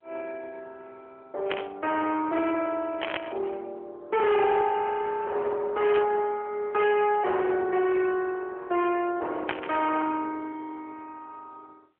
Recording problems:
phone line; 320 Hz to 3.4 kHz, AMR-NB
distorted audio; soft clipping, signal-to-distortion ratio 8 dB
static burst; 4 times, first at 1.5 s; peak -1 dB vs average level

